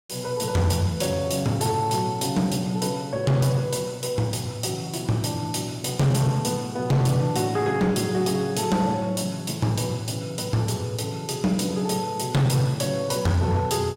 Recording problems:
distorted audio; hard clipping, uneven, signal-to-distortion ratio 12 dB

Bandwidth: 16.5 kHz